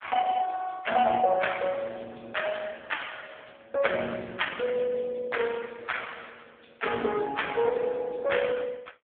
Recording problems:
phone line; 190 Hz to 3.3 kHz, AMR-NB

